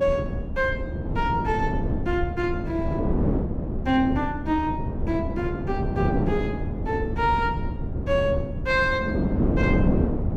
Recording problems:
rumble; below 100 Hz, SNR 7 dB
wind noise; below 350 Hz, SNR 1 dB

